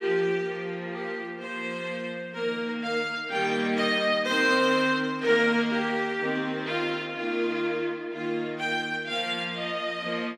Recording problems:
none

